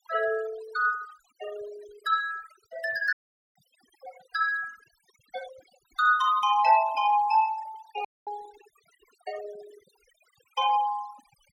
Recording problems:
noise reduction artefacts; signal-to-artefact ratio 20 dB
dropout; at 3 s and at 8 s

